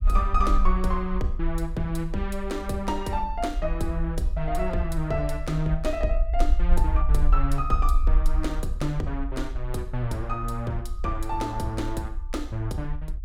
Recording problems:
rumble; below 50 Hz, strongest tone 20 Hz, SNR 1 dB

